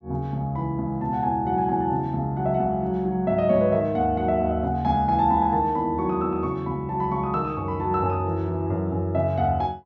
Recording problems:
treble cut off; nothing above 8 kHz

